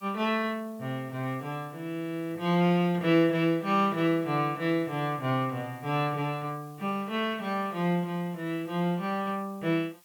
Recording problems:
hiss; slope +1 dB per octave, SNR 28 dB

